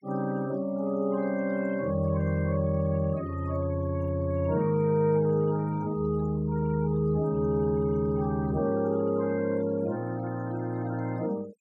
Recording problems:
noise reduction artefacts; signal-to-artefact ratio 24 dB

